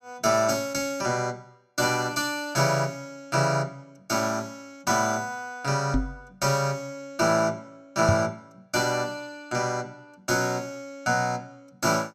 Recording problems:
microphone thump; at 6 s and at 8 s; peak +5 dB vs average level

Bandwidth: 14 kHz